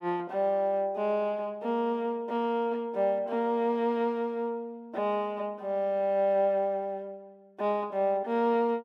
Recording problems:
none

